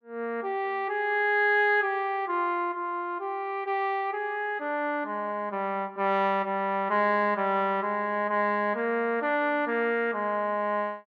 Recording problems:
none

